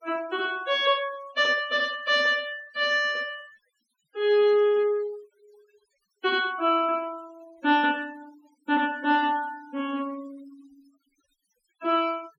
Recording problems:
denoising artefacts; signal-to-artefact ratio 23 dB

